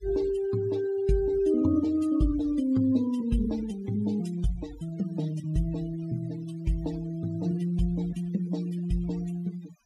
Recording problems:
denoising artefacts; signal-to-artefact ratio 20 dB

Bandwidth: 15.5 kHz